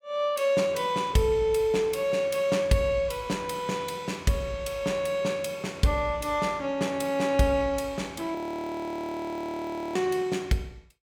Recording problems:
audio freezing; at 8.5 s for 1.5 s

